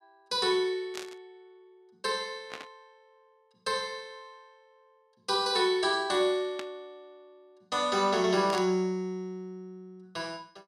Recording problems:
burst of static; 4 times, first at 1 s; peak -6 dB vs average level

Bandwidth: 13.5 kHz